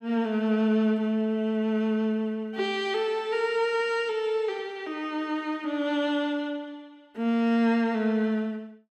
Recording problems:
none

